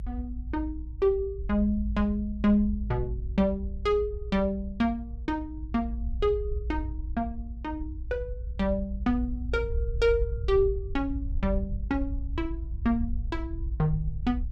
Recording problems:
low-frequency rumble; below 66 Hz, strongest tone 54 Hz, SNR 6 dB

